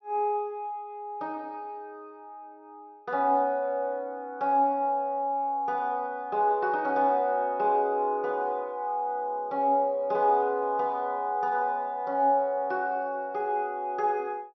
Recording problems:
low-pass filter; nothing above 5.9 kHz

